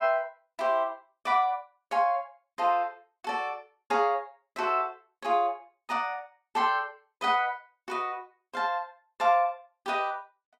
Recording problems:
none

